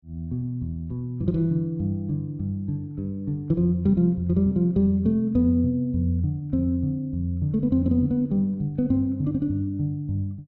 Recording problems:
none

